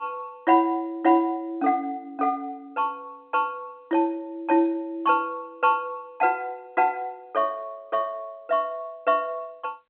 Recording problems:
telephone audio; 220 Hz to 3.6 kHz, G.711

